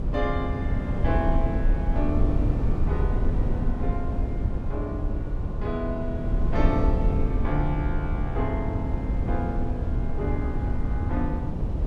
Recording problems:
wind on the microphone; below 110 Hz, SNR -4 dB

